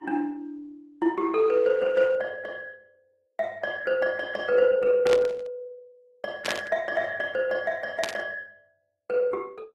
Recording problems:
lossy compression; Opus, then Vorbis, log-spectral distance 2 dB, nothing above 12.7 kHz
static burst; at 5 s, at 6.5 s and at 8 s; peak +1 dB vs average level

